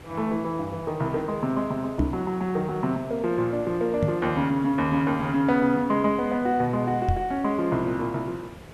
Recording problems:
hiss; slope -6 dB per octave, SNR 19 dB
microphone bump; at 2 s, at 4 s and at 7 s; peak +4 dB vs average level

